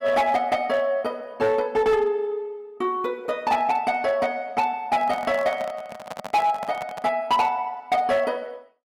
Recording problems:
distortion; hard clipping, signal-to-distortion ratio 11 dB
handling noise; from 5 to 7 s; peak -6 dB vs average level

